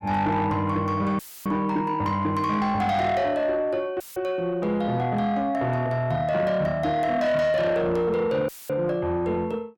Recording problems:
distorted audio; soft clipping, signal-to-distortion ratio 11 dB
audio cutting out; at 1 s, at 4 s and at 8.5 s; filled with static

